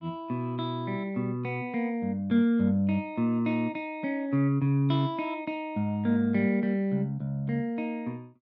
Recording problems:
none

